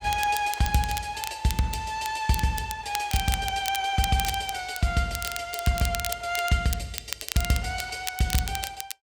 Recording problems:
crackle; vinyl, SNR 7 dB

